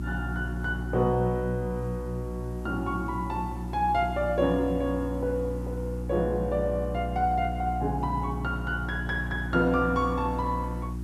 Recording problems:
hum; 60 Hz, harmonics up to 360 Hz, SNR 5 dB
background hiss; SNR 27 dB

